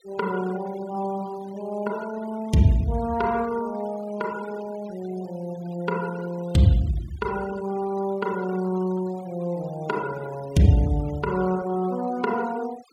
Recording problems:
denoising artefacts; signal-to-artefact ratio 20 dB

